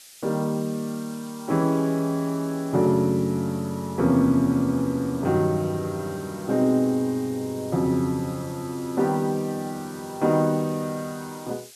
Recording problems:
hiss; SNR 20 dB

